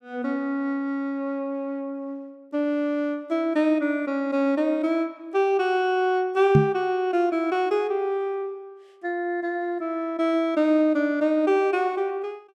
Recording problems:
microphone thump; at 6.5 s; peak +9 dB vs average level

